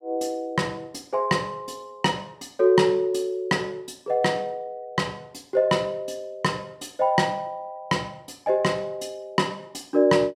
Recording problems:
none

